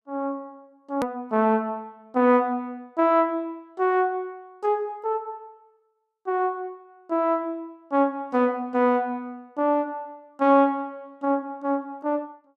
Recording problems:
click at an edit; at 1 s

